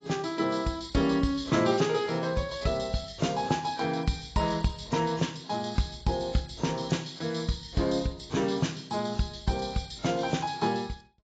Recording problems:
lossy compression; AAC, log-spectral distance 5 dB, nothing above 7.6 kHz

